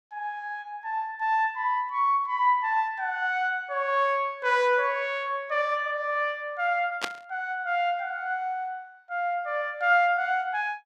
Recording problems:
burst of static; at 7 s; peak +2 dB vs average level

